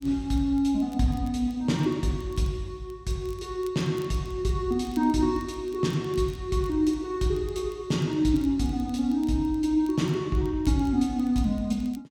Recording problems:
crackling; vinyl, SNR 29 dB

